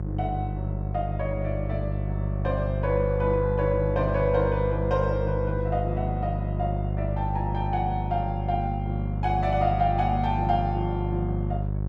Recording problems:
electrical hum; 50 Hz, harmonics up to 550 Hz, SNR 1 dB

